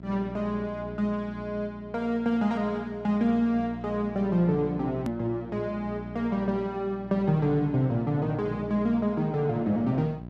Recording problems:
hum; 60 Hz, harmonics up to 960 Hz, SNR 14 dB
edit click; at 5 s

